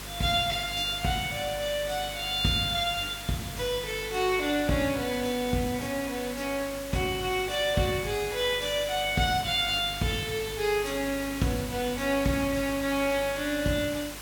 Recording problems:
electrical hum; 50 Hz, harmonics up to 550 Hz, SNR 18 dB
background hiss; slope -1 dB per octave, SNR 11 dB

